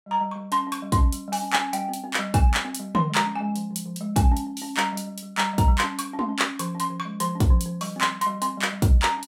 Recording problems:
none

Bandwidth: 16 kHz